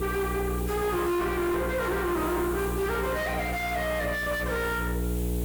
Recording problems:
distorted audio; soft clipping, signal-to-distortion ratio 6 dB
hum; 60 Hz, harmonics up to 480 Hz, SNR 4 dB
hiss; slope -2 dB per octave, SNR 14 dB

